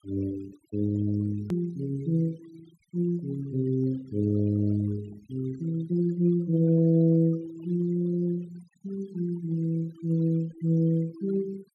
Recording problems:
noise reduction artefacts; signal-to-artefact ratio 23 dB
hard cut with a click; at 1.5 s

